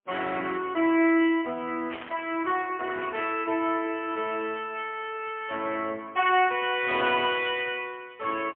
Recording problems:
telephone audio; 190 Hz to 3.3 kHz, AMR-NB, then MP3
burst of static; at 2 s; peak -8 dB vs average level

